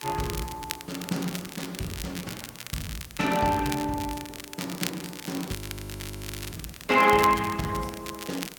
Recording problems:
lossy compression; Opus, log-spectral distance 6 dB, nothing above 15.5 kHz
background hiss; slope -3 dB per octave, SNR 23 dB
crackling; vinyl, SNR 10 dB
frozen audio; at 5.5 s for 1 s

